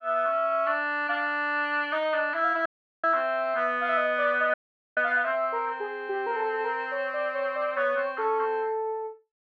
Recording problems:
dropout; at 2.5 s and at 4.5 s

